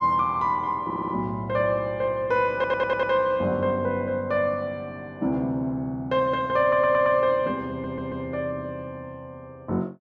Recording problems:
audio stuttering; 4 times, first at 1 s

